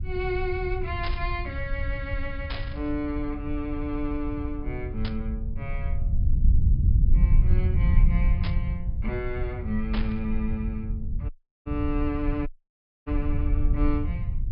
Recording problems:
treble cut off; nothing above 5.5 kHz
rumble; below 78 Hz, SNR -4 dB
burst of static; 5 times, first at 1 s; peak +1 dB vs average level
audio cutting out; at 11 s and at 12 s for 0.5 s

